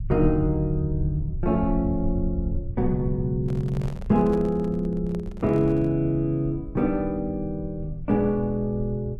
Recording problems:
low-frequency rumble; below 84 Hz, SNR 10 dB
microphone handling noise; from 3.5 to 6 s; peak -10 dB vs average level

